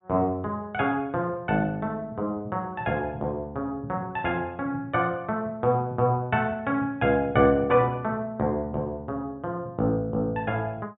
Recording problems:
treble missing; nothing above 4 kHz

